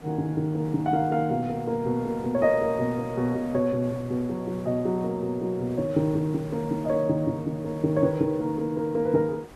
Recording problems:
hiss; slope -6 dB per octave, SNR 20 dB

